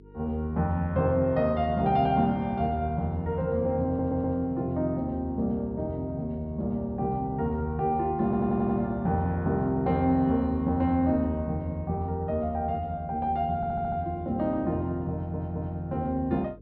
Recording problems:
low-pass filter; nothing above 5.5 kHz
electrical hum; 50 Hz, harmonics up to 450 Hz, SNR 23 dB
audio stuttering; 4 times, first at 4 s

